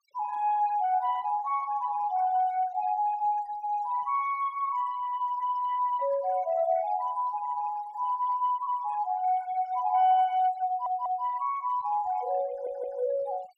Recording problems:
noise reduction artefacts; signal-to-artefact ratio 24 dB
audio stuttering; at 11 s and at 13 s

